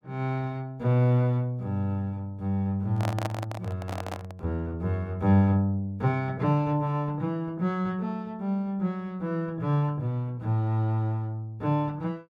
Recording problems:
handling noise; from 3 to 4.5 s; peak -1 dB vs average level

